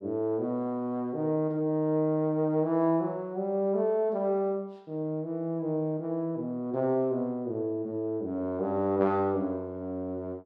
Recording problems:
none

